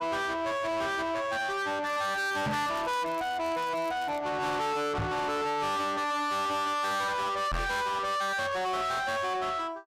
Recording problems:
distorted audio; soft clipping, signal-to-distortion ratio 7 dB
crackle; from 2 to 4 s; loose cable, SNR 21 dB
knock on the microphone; at 2.5 s, at 5 s and at 7.5 s; peak +3 dB vs average level

